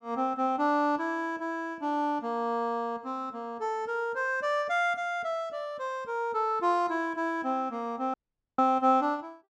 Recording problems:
audio cutting out; at 8 s

